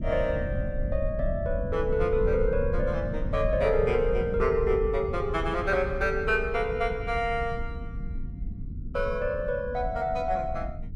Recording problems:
low-frequency rumble; below 110 Hz, SNR 6 dB

